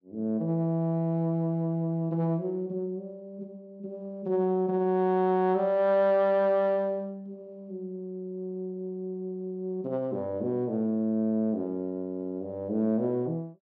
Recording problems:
none

